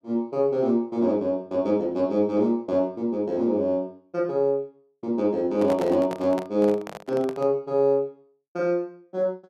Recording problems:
handling noise; from 5.5 to 7.5 s; peak -4 dB vs average level

